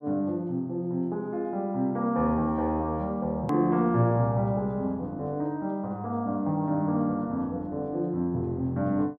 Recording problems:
hard cut with a click; at 3.5 s

